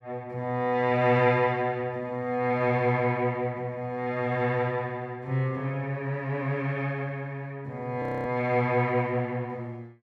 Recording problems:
frozen audio; at 8 s

